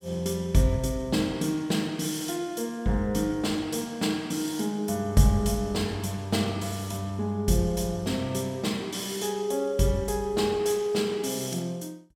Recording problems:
none

